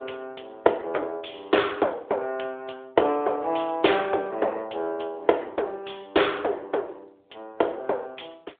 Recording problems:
phone line; 320 Hz to 3.6 kHz, AMR-NB

